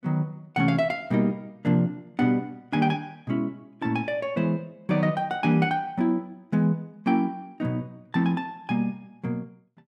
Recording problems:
none

